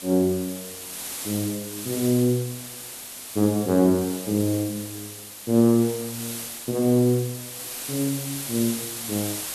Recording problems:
hiss; slope 0 dB per octave, SNR 9 dB

